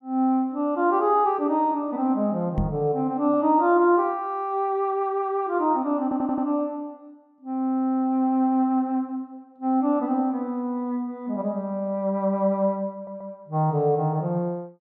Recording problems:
knock on the microphone; at 2.5 s; peak +1 dB vs average level
audio stuttering; at 6 s and at 13 s

